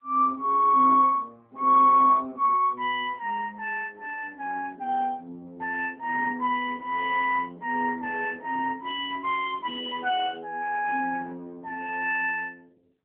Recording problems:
telephone audio; 220 Hz to 3.3 kHz, AMR-NB

